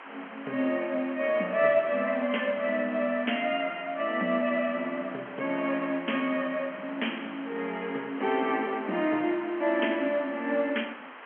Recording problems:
phone line; 220 Hz to 3.3 kHz, G.711
background hiss; SNR 15 dB

